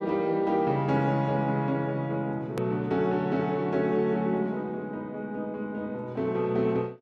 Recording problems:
edit click; at 2.5 s

